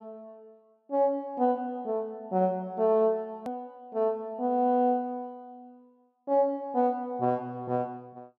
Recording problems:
hard cut with a click; at 3.5 s

